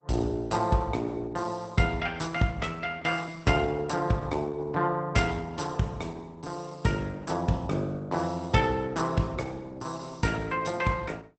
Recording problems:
lossy compression; Opus, log-spectral distance 4 dB, nothing above 8.2 kHz

